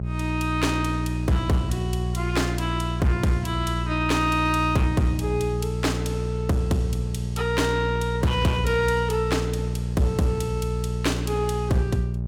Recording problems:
distorted audio; hard clipping, uneven, signal-to-distortion ratio 11 dB
hum; 60 Hz, harmonics up to 420 Hz, SNR 3 dB

